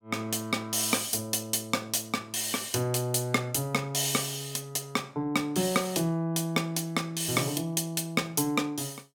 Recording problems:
none

